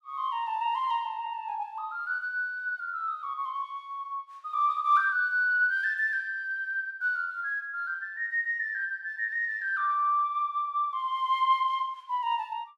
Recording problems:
none

